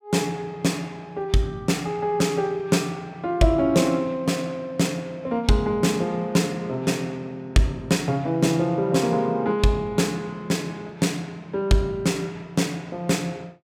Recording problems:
none

